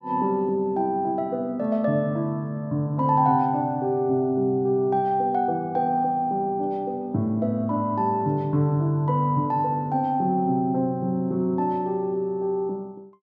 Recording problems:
none

